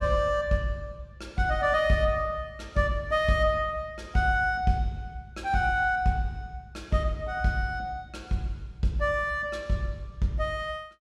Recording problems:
none

